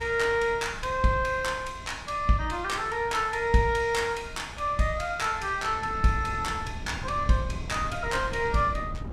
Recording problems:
wind noise; below 160 Hz, SNR 14 dB

